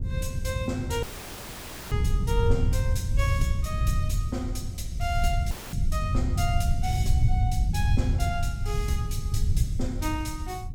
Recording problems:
low-frequency rumble; below 110 Hz, SNR -5 dB
wind noise; below 130 Hz, SNR 6 dB
audio cutting out; at 1 s for 1 s and at 5.5 s

